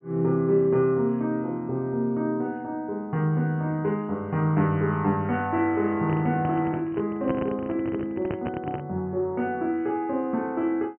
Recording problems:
treble cut off; nothing above 3.1 kHz
handling noise; from 6 to 9 s; peak -1 dB vs average level

